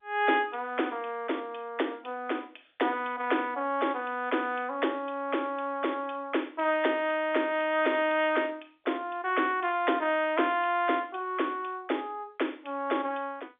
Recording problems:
telephone audio; 240 Hz to 3.6 kHz, G.711

